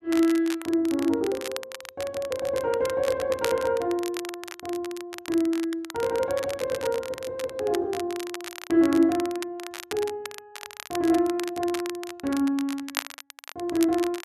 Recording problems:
crackle; vinyl, SNR 12 dB

